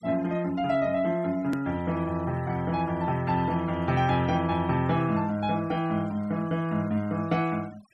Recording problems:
noise reduction artefacts; signal-to-artefact ratio 22 dB
edit click; at 1.5 s

